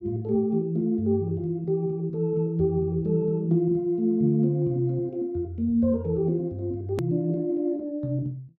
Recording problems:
hard cut with a click; at 7 s

